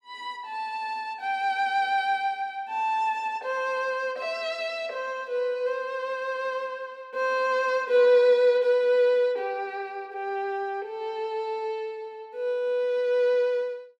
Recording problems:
none

